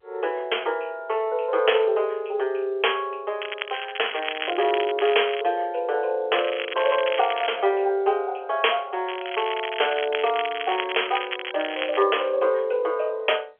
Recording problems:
phone line; 340 Hz to 3.3 kHz, G.711
crackle; from 3.5 to 5.5 s, from 6.5 to 7.5 s and from 9 to 12 s; loose cable, SNR 7 dB

